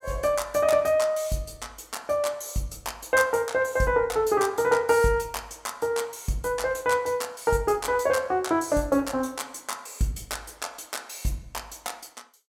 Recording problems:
none

